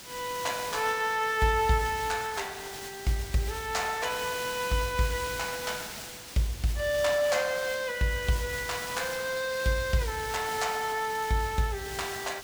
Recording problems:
background hiss; slope 0 dB per octave, SNR 10 dB

